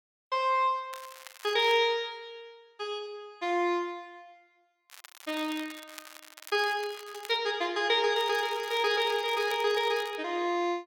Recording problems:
crackle; at 1 s, from 5 to 7.5 s and from 8 to 10 s; loose cable, SNR 19 dB

